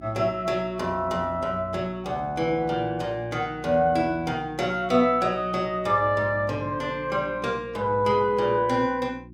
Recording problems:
electrical hum; 60 Hz, harmonics up to 360 Hz, SNR 20 dB

